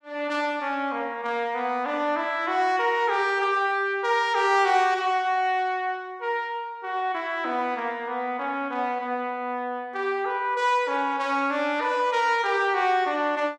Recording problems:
none

